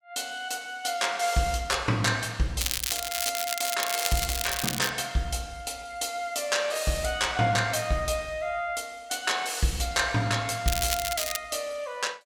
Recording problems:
crackle; from 2.5 to 5 s and at 11 s; loose cable, SNR 1 dB

